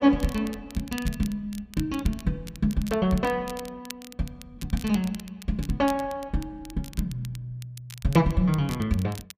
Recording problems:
crackling; vinyl, SNR 17 dB

